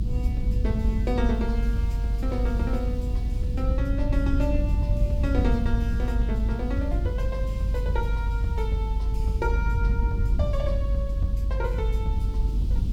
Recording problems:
hiss; SNR 21 dB
low-frequency rumble; below 78 Hz, strongest tone 50 Hz, SNR -5 dB

